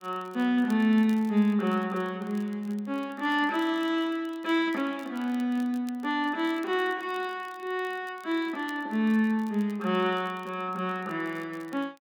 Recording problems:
crackling; vinyl, SNR 28 dB

